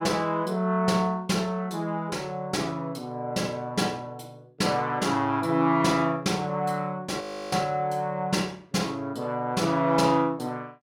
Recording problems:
frozen audio; at 7 s

